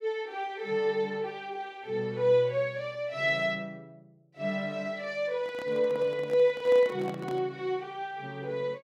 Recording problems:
microphone handling noise; from 5.5 to 7.5 s; peak -8 dB vs average level

